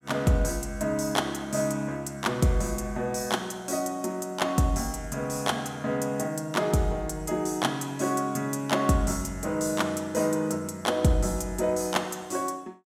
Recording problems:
none

